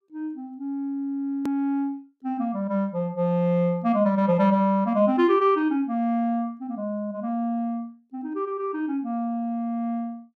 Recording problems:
click at an edit; at 1.5 s

